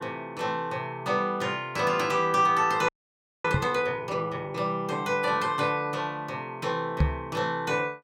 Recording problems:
audio freezing; at 3 s for 0.5 s
microphone thump; at 3.5 s and at 7 s; peak +7 dB vs average level

